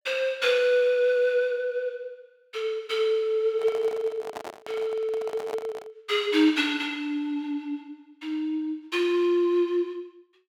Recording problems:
microphone handling noise; from 3.5 to 6 s; peak -6 dB vs average level

